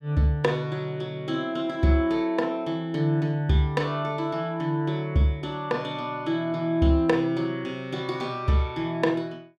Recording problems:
none

